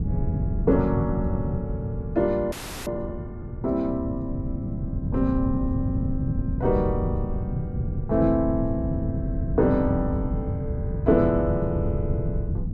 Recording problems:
wind on the microphone; below 160 Hz, SNR 2 dB
frozen audio; at 2.5 s

